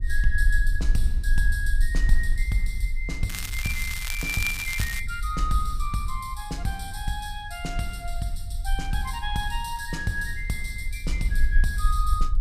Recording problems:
rumble; below 48 Hz, strongest tone 22 Hz, SNR 0 dB
crackling; from 3.5 to 5 s; loose cable, SNR 3 dB

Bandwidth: 15 kHz